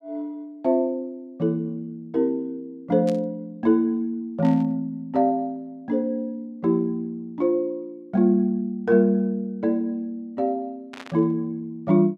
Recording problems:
static burst; at 3 s, at 4.5 s and at 11 s; peak -11 dB vs average level

